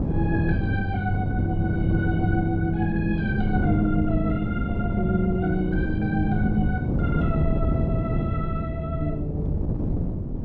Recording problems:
wind noise; below 230 Hz, SNR 1 dB

